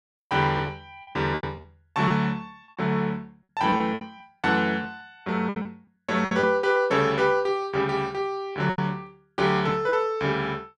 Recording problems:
lost packets; 9% of the sound replaced, filled with repeated pitch periods

